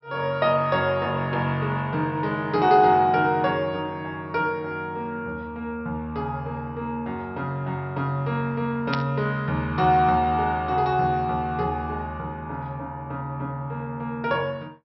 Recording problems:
low-pass filter; nothing above 5.6 kHz
burst of static; at 9 s; peak -1 dB vs average level

